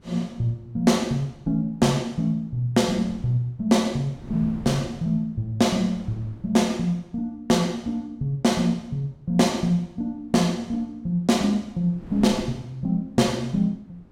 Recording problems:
wind noise; below 290 Hz, SNR 21 dB

